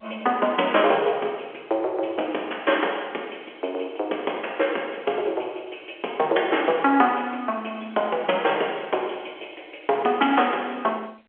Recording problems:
telephone audio; 320 Hz to 3.4 kHz, G.711

